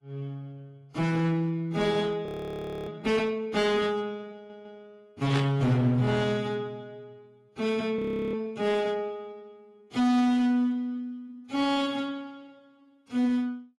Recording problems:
codec artefacts; AAC, then AAC, log-spectral distance 2 dB, nothing above 20.1 kHz
distorted audio; hard clipping, uneven, signal-to-distortion ratio 6 dB
frozen audio; at 2.5 s for 0.5 s and at 8 s
stutter; at 4.5 s
static burst; at 5.5 s; peak -1 dB vs average level

